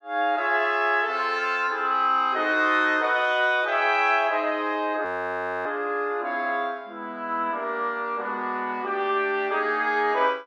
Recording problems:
frozen audio; at 5 s for 0.5 s

